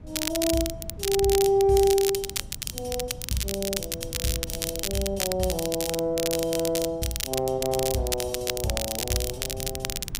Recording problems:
wind on the microphone; below 150 Hz, SNR 15 dB
crackle; vinyl, SNR 4 dB

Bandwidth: 15.5 kHz